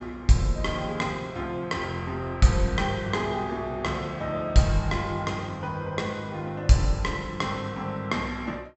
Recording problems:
treble cut off; nothing above 7.9 kHz

